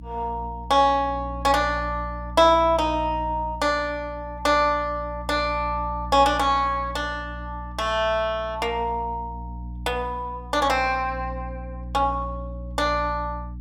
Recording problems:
hum; 60 Hz, harmonics up to 300 Hz, SNR 13 dB

